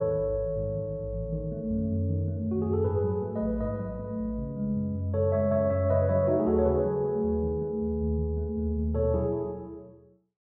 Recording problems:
none

